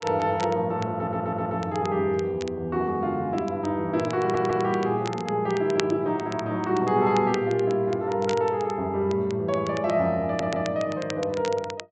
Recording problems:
low-pass filter; nothing above 8 kHz
crackling; vinyl, SNR 17 dB
audio stuttering; at 1 s, at 4 s and at 10 s

